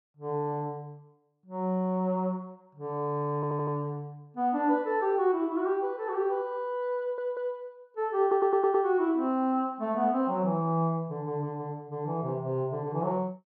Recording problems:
audio stuttering; at 3.5 s, at 7 s and at 8 s

